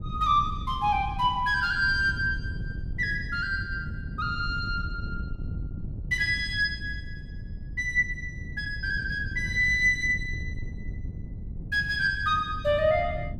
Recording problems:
wind on the microphone; below 130 Hz, SNR 10 dB

